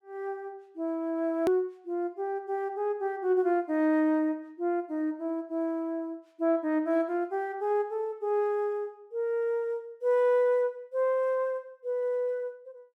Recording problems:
hard cut with a click; at 1.5 s

